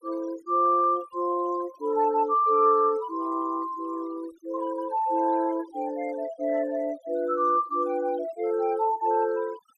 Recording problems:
denoising artefacts; signal-to-artefact ratio 23 dB

